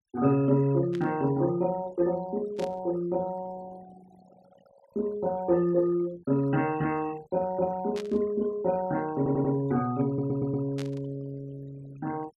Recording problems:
denoising artefacts; signal-to-artefact ratio 21 dB
static burst; 4 times, first at 1 s; peak -10 dB vs average level
audio stuttering; at 9 s and at 10 s

